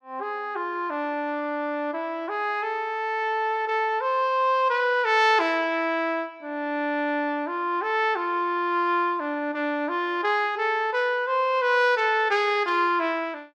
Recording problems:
none

